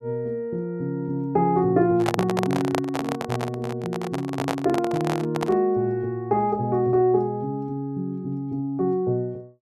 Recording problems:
microphone handling noise; from 2 to 5.5 s; peak +3 dB vs average level

